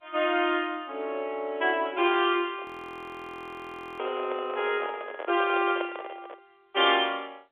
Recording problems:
telephone audio; 280 Hz to 3.5 kHz, G.711
microphone handling noise; from 2.5 to 6.5 s; peak -3 dB vs average level
audio freezing; at 2.5 s for 1.5 s

